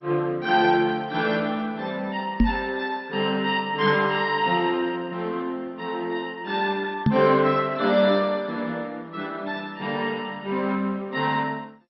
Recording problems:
lossy compression; MP2, log-spectral distance 3 dB, nothing above 5.5 kHz
knock on the microphone; at 2.5 s and at 7 s; peak +8 dB vs average level

